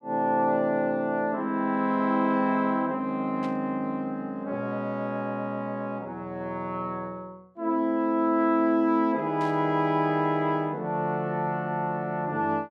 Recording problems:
static burst; at 3.5 s and at 9.5 s; peak -14 dB vs average level

